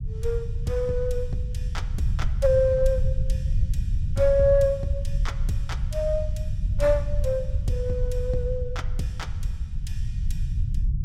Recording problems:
rumble; below 86 Hz, SNR 2 dB

